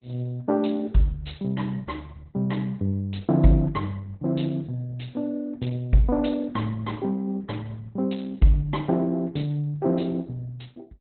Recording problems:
codec artefacts; Opus, log-spectral distance 3 dB, nothing above 4.1 kHz

